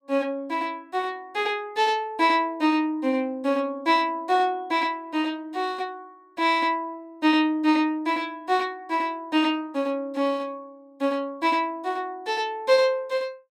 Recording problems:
none

